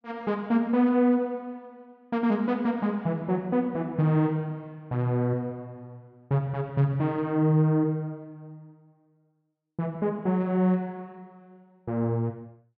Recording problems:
none

